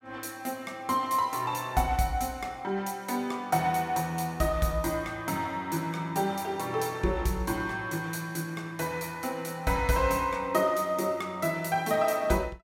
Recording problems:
none

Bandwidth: 16 kHz